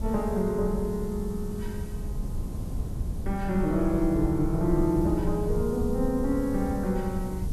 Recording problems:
hiss; SNR 24 dB
wind noise; below 100 Hz, SNR 7 dB

